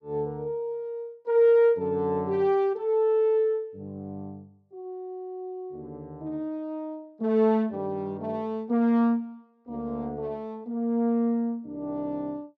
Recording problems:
none

